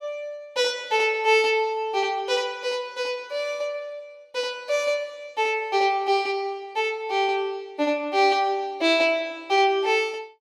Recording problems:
none

